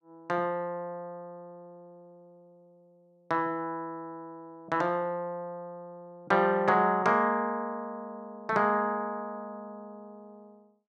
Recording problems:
none

